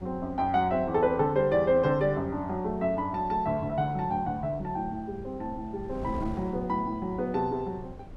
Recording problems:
wind on the microphone; below 240 Hz, SNR 16 dB

